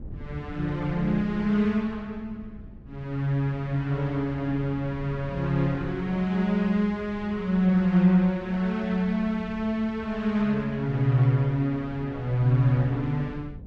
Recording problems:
wind noise; below 180 Hz, SNR 18 dB

